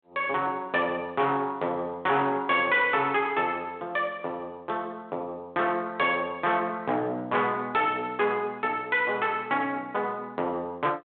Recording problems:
phone line; 170 Hz to 3.7 kHz, G.726
distorted audio; soft clipping, signal-to-distortion ratio 11 dB

